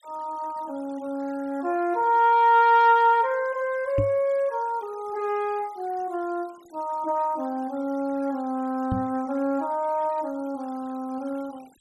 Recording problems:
denoising artefacts; signal-to-artefact ratio 27 dB
microphone bump; at 4 s and at 9 s; peak +1 dB vs average level

